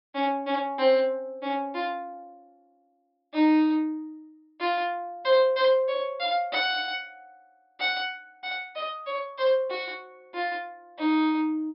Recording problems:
treble missing; nothing above 5.5 kHz

